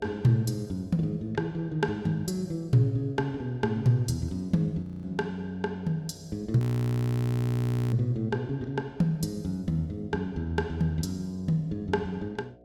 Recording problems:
hum; 60 Hz, harmonics up to 720 Hz, SNR 26 dB
audio freezing; at 5 s and at 6.5 s for 1.5 s

